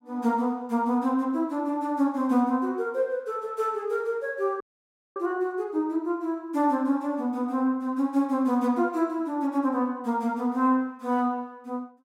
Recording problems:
dropout; at 4.5 s for 0.5 s

